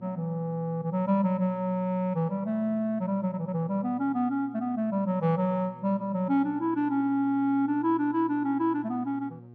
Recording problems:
hum; 60 Hz, harmonics up to 840 Hz, SNR 22 dB

